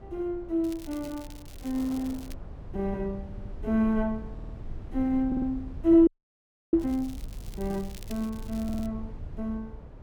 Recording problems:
low-frequency rumble; below 88 Hz, SNR 14 dB
wind noise; below 600 Hz, SNR 24 dB
crackle; from 0.5 to 2.5 s and from 7 to 9 s; loose cable, SNR 22 dB
stutter; 4 times, first at 3.5 s
frozen audio; at 6 s for 0.5 s

